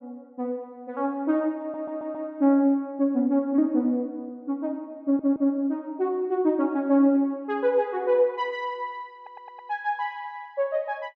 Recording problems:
stutter; at 1.5 s, at 5 s and at 9 s

